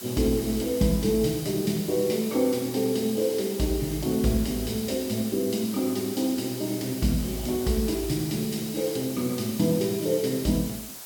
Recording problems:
hiss; slope 0 dB per octave, SNR 11 dB

